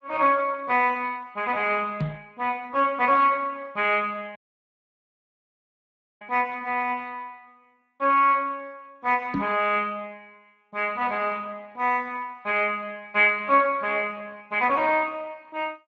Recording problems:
codec artefacts; Speex, log-spectral distance 3 dB
microphone bump; at 2 s and at 9.5 s; peak +1 dB vs average level
dropout; at 4.5 s for 2 s

